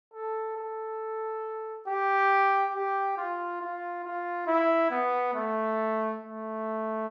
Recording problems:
none

